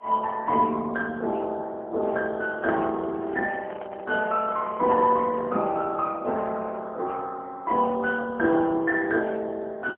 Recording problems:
telephone audio; 240 Hz to 3.6 kHz, AMR-NB, then MP3
microphone handling noise; from 2.5 to 5.5 s; peak -9 dB vs average level

